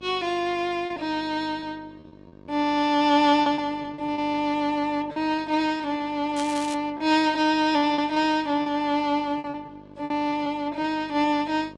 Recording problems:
lossy codec; Vorbis, log-spectral distance 2 dB
hum; 50 Hz, harmonics up to 1.3 kHz, SNR 23 dB
lost packets; 7% of the sound replaced, filled with repeated pitch periods
crackling; at 6.5 s; loose cable, SNR 15 dB

